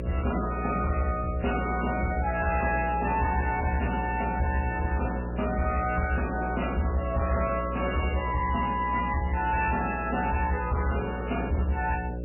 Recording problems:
lossy codec; MP3, log-spectral distance 8 dB, nothing above 2.5 kHz
distortion; hard clipping, signal-to-distortion ratio 10 dB
hum; 60 Hz, harmonics up to 600 Hz, SNR 6 dB

